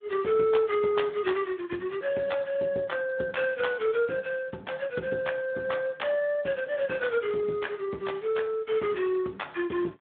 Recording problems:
telephone audio; 220 Hz to 3.6 kHz, Speex

